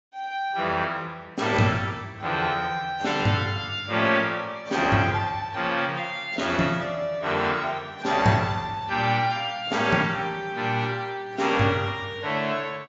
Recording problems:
codec artefacts; AAC, log-spectral distance 2 dB, nothing above 7.3 kHz

